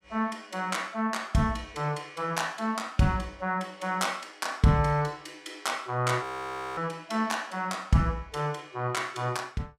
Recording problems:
audio freezing; at 6 s for 0.5 s

